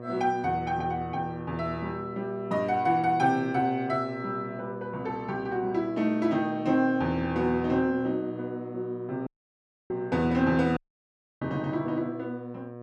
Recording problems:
hum; 60 Hz, harmonics up to 1.3 kHz, SNR 12 dB
audio cutting out; at 9.5 s for 0.5 s and at 11 s for 0.5 s

